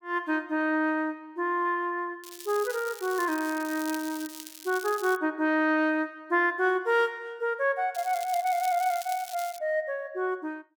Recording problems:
crackling; from 2 to 5 s and from 8 to 9.5 s; loose cable, SNR 14 dB

